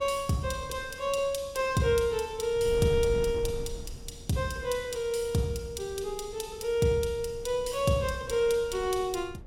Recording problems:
wind on the microphone; below 130 Hz, SNR 15 dB

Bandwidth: 16.5 kHz